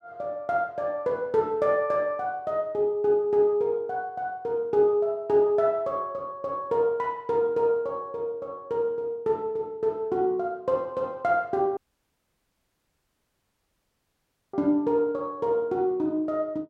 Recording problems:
dropout; at 12 s for 3 s

